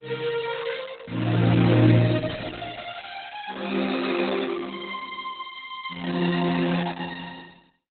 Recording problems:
codec artefacts; Opus, log-spectral distance 7 dB, nothing above 4 kHz

